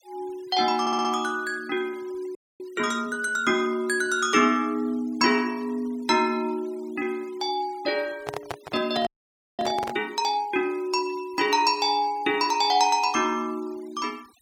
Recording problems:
noise reduction artefacts; signal-to-artefact ratio 25 dB
audio stuttering; at 1 s
frozen audio; at 2.5 s and at 9 s for 0.5 s
handling noise; from 8 to 10 s; peak -3 dB vs average level

